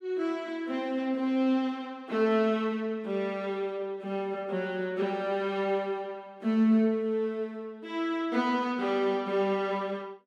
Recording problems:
none

